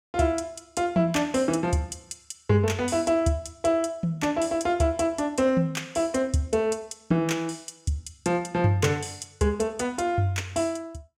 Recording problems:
none

